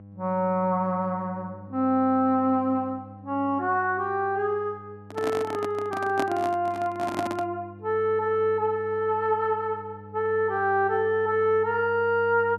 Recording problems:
hum; 50 Hz, harmonics up to 800 Hz, SNR 19 dB
handling noise; from 5 to 7.5 s; peak 0 dB vs average level

